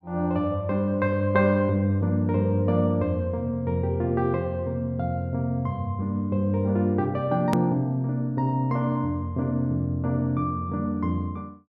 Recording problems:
click at an edit; at 7.5 s

